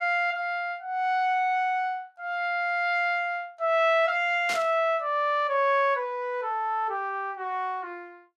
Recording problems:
static burst; at 4.5 s; peak -3 dB vs average level

